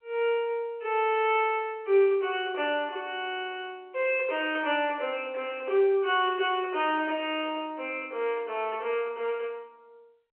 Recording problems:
telephone audio; 320 Hz to 3.3 kHz, G.711

